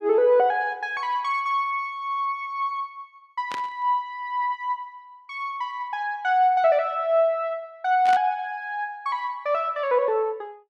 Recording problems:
static burst; at 3.5 s and at 8 s; peak -6 dB vs average level

